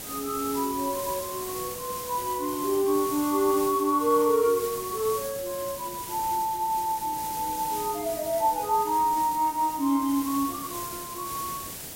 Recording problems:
hiss; SNR 9 dB

